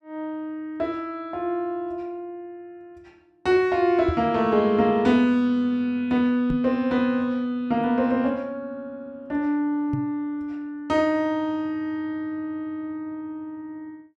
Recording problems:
microphone thump; at 4 s, at 6.5 s and at 10 s; peak 0 dB vs average level

